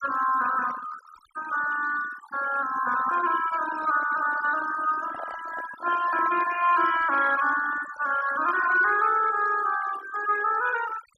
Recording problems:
noise reduction artefacts; signal-to-artefact ratio 13 dB
microphone handling noise; from 5 to 6.5 s; peak -10 dB vs average level

